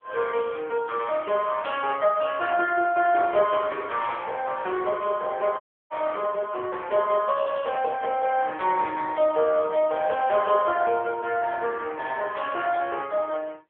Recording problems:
phone line; 320 Hz to 3.4 kHz, AMR-NB
burst of static; at 2.5 s, at 4 s and at 12 s; peak -13 dB vs average level
audio cutting out; at 5.5 s

